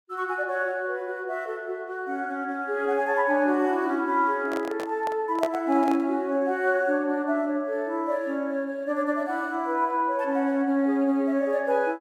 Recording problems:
microphone handling noise; from 4.5 to 6 s; peak 0 dB vs average level

